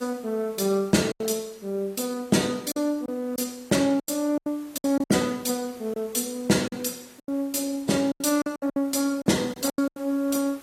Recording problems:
lossy codec; AAC, log-spectral distance 4 dB, nothing above 13.8 kHz
hiss; slope -3 dB per octave, SNR 25 dB
packet loss; 10% of the sound replaced, filled with silence

